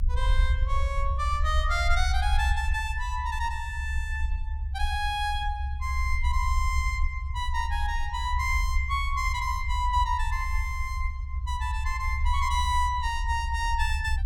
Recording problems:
rumble; below 68 Hz, SNR 1 dB

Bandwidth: 17.5 kHz